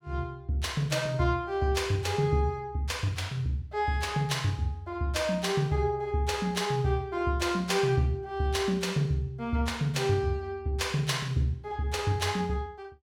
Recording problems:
none

